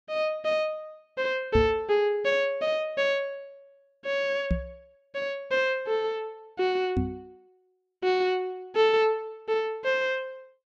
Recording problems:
knock on the microphone; at 1.5 s, at 4.5 s and at 7 s; peak +4 dB vs average level

